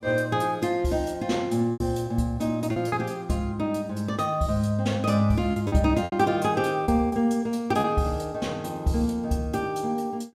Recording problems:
lost packets; 4% of the sound replaced, filled with repeated pitch periods

